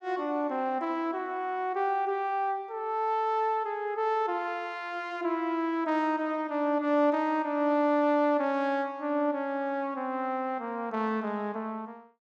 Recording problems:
none

